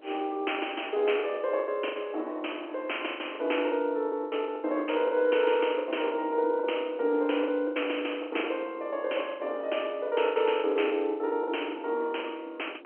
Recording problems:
telephone audio; 260 Hz to 3.2 kHz, G.711
wind on the microphone; below 500 Hz, SNR 20 dB
packet loss; 14% of the sound replaced, filled with the last packet

